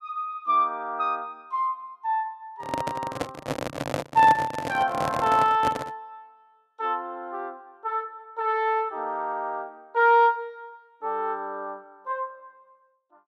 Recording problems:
microphone handling noise; from 2.5 to 6 s; peak +2 dB vs average level

